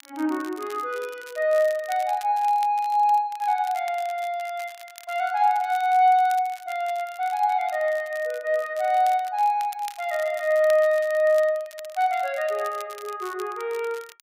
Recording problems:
crackling; vinyl, SNR 22 dB

